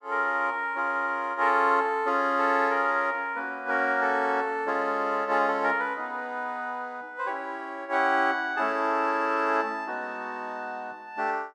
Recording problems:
none

